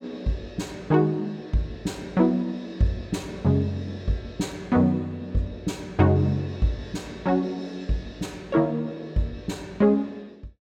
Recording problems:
none

